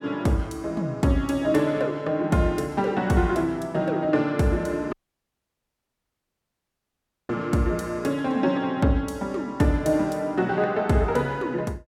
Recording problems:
dropout; at 5 s for 2.5 s

